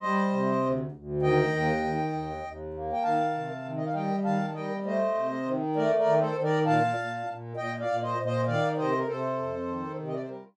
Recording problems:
none

